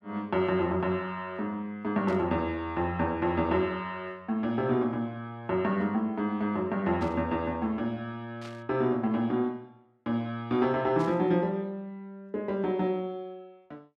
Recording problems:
static burst; 4 times, first at 2 s; peak -13 dB vs average level

